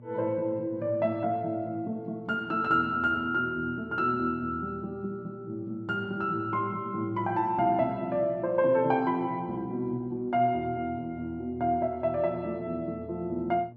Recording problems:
hum; 60 Hz, harmonics up to 840 Hz, SNR 20 dB

